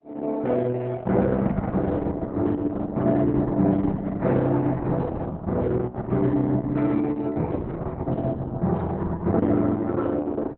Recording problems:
lossy compression; Opus, log-spectral distance 3 dB, nothing above 4 kHz

